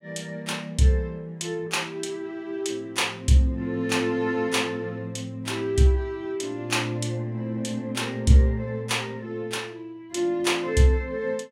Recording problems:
none

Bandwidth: 16 kHz